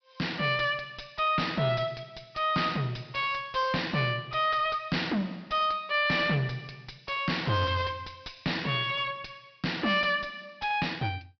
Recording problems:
treble missing; nothing above 5.5 kHz
distorted audio; soft clipping, signal-to-distortion ratio 10 dB

